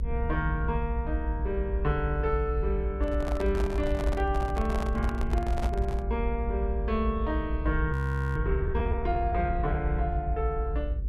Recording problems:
hum; 50 Hz, harmonics up to 500 Hz, SNR 20 dB
low-frequency rumble; below 64 Hz, SNR 0 dB
microphone handling noise; from 3 to 6 s; peak -1 dB vs average level
audio freezing; at 8 s

